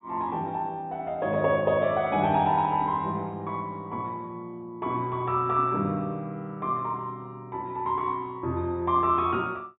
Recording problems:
treble cut off; nothing above 4 kHz

